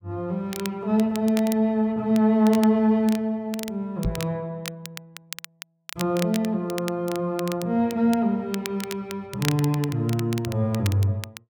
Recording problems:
crackling; vinyl, SNR 14 dB
knock on the microphone; at 4 s; peak +2 dB vs average level

